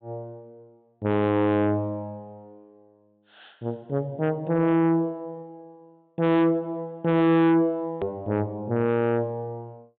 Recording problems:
treble missing; nothing above 4 kHz
distortion; soft clipping, signal-to-distortion ratio 7 dB
hard cut with a click; at 8 s

